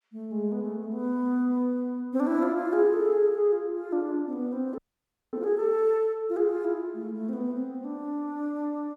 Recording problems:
audio freezing; at 5 s for 0.5 s

